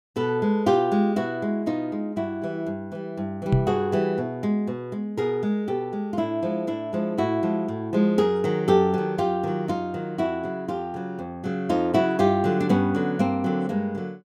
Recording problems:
microphone bump; at 3.5 s; peak +7 dB vs average level

